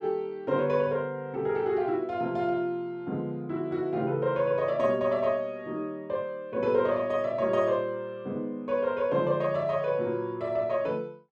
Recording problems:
none

